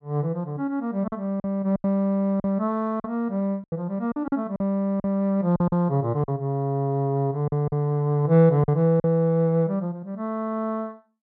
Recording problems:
packet loss; 7% of the sound replaced, filled with silence

